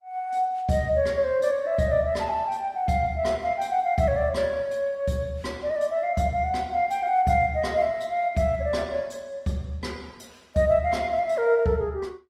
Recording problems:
lossy compression; Opus, log-spectral distance 2 dB

